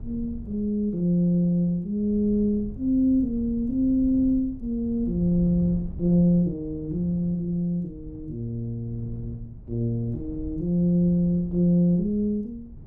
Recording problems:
wind on the microphone; below 120 Hz, SNR 16 dB

